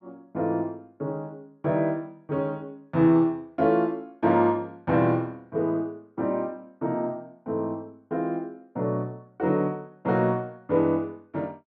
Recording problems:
none

